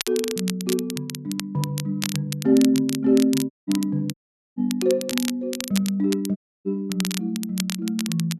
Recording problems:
crackle; vinyl, SNR 9 dB
audio cutting out; at 3.5 s, at 4 s and at 6.5 s

